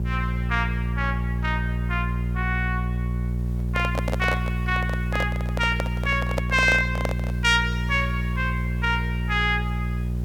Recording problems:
hum; 60 Hz, harmonics up to 420 Hz, SNR 1 dB
hiss; slope -3 dB per octave, SNR 28 dB
microphone handling noise; from 3.5 to 7.5 s; peak +3 dB vs average level

